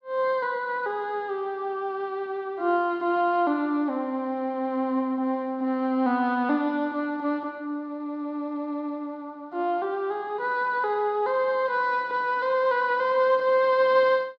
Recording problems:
none

